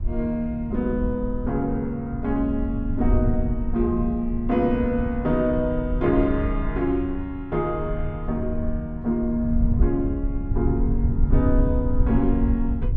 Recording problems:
rumble; below 82 Hz, SNR 3 dB

